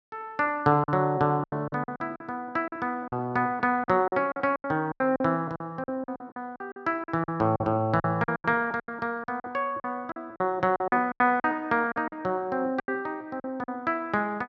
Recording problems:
lost packets; 14% of the sound replaced, filled with silence

